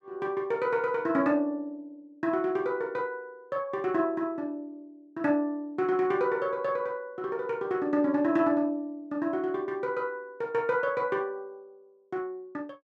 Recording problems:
none

